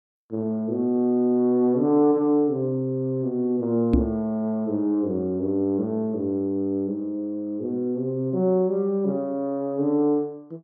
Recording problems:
microphone thump; at 4 s; peak +7 dB vs average level

